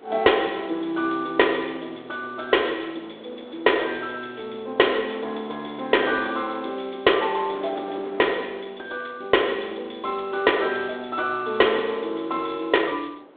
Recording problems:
phone line; 280 Hz to 3.6 kHz, G.726
wind noise; below 800 Hz, SNR 20 dB

